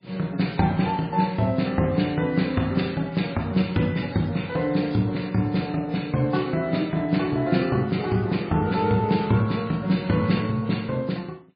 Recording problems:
lossy compression; MP3, log-spectral distance 4 dB, nothing above 4.8 kHz

